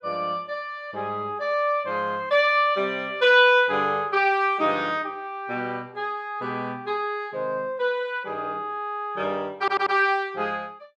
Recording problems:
stutter; at 9.5 s

